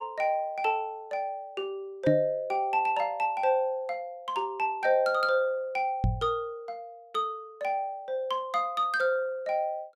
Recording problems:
knock on the microphone; at 2 s and at 6 s; peak +6 dB vs average level

